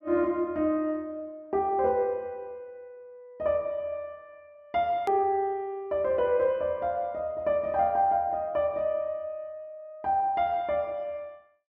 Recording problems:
edit click; at 5 s

